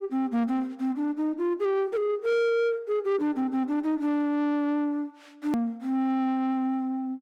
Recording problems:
distortion; soft clipping, signal-to-distortion ratio 12 dB
click at an edit; at 5.5 s

